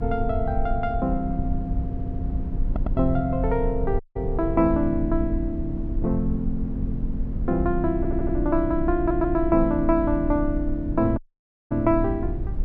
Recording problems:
hum; 50 Hz, harmonics up to 500 Hz, SNR 19 dB
rumble; below 74 Hz, SNR 5 dB
stutter; 4 times, first at 2 s
dropout; at 4 s and at 11 s for 0.5 s

